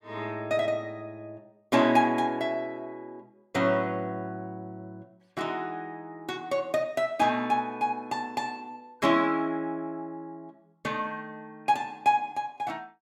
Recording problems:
none

